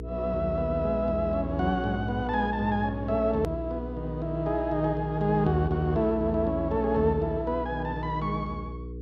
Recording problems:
hum; 60 Hz, harmonics up to 480 Hz, SNR 9 dB
click at an edit; at 3.5 s

